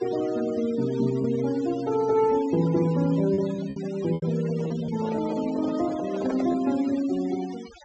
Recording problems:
treble missing; nothing above 8 kHz
denoising artefacts; signal-to-artefact ratio 17 dB
lost packets; 4% of the sound replaced, filled with repeated pitch periods
handling noise; from 4.5 to 6.5 s; peak -4 dB vs average level

